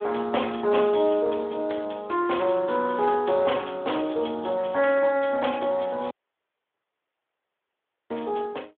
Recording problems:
telephone audio; 320 Hz to 3.5 kHz, Speex
audio cutting out; at 6 s for 2 s

